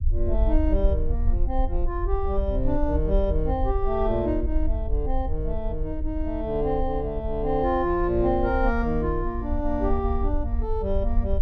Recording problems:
rumble; below 60 Hz, SNR 2 dB

